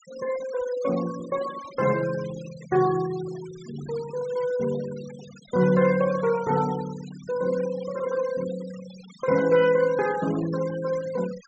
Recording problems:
treble missing; nothing above 8 kHz
noise reduction artefacts; signal-to-artefact ratio 18 dB

